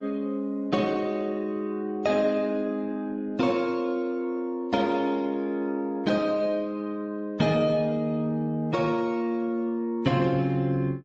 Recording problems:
codec artefacts; MP3, then Opus, log-spectral distance 2 dB, nothing above 6.9 kHz

